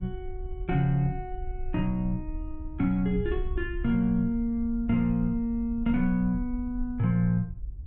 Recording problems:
treble cut off; nothing above 4 kHz
wind noise; below 60 Hz, SNR 11 dB

